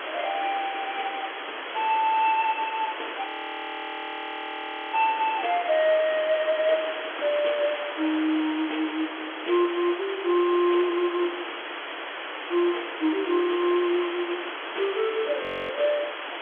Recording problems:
telephone audio; 260 Hz to 3.4 kHz, G.711
background hiss; SNR 7 dB
frozen audio; at 3.5 s for 1.5 s and at 15 s

